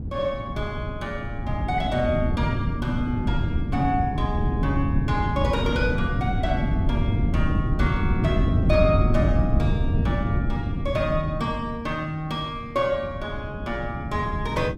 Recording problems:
wind on the microphone; below 180 Hz, SNR -2 dB

